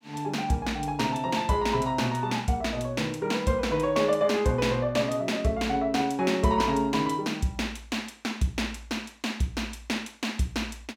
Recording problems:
none

